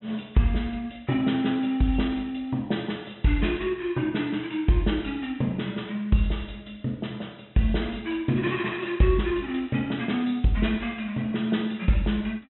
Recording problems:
treble cut off; nothing above 3.9 kHz

